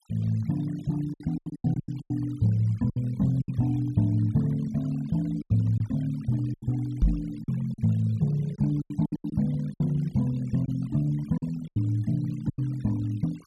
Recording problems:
denoising artefacts; signal-to-artefact ratio 26 dB
lost packets; 10% of the sound replaced, filled with silence
microphone bump; at 7 s; peak +7 dB vs average level

